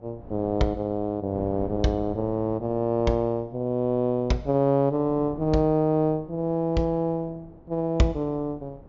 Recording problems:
treble cut off; nothing above 7.2 kHz
wind on the microphone; below 380 Hz, SNR 20 dB

